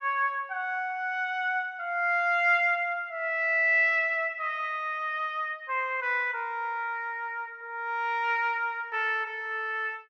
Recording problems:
none

